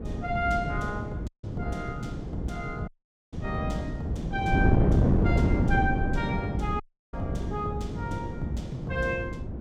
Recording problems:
wind on the microphone; below 260 Hz, SNR -2 dB
audio cutting out; at 1.5 s, at 3 s and at 7 s

